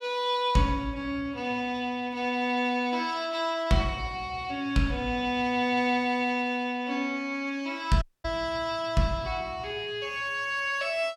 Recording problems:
dropout; at 8 s

